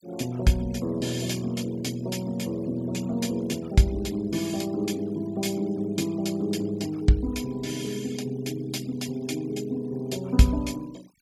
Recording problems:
noise reduction artefacts; signal-to-artefact ratio 22 dB

